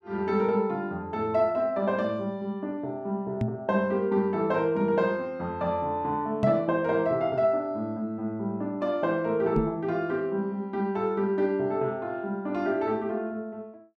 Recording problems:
microphone thump; at 3.5 s, at 6.5 s and at 9.5 s; peak +5 dB vs average level

